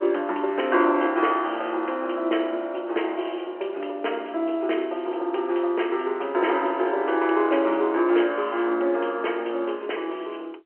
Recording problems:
telephone audio; 280 Hz to 3.1 kHz, G.711

